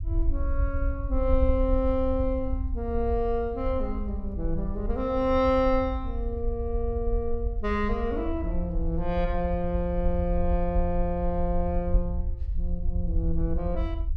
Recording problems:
rumble; below 64 Hz, SNR 3 dB

